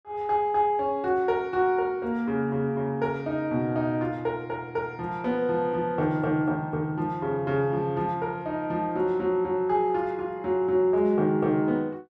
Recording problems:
none

